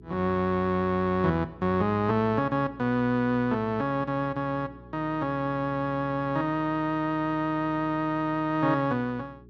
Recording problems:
electrical hum; 60 Hz, harmonics up to 420 Hz, SNR 22 dB

